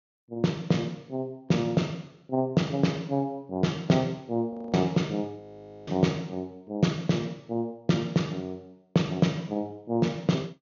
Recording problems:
treble missing; nothing above 6.9 kHz
audio freezing; at 4.5 s and at 5.5 s

